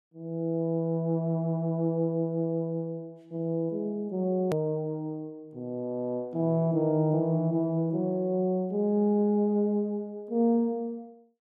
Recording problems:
hard cut with a click; at 4.5 s

